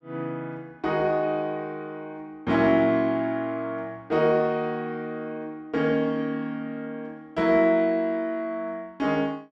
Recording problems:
none

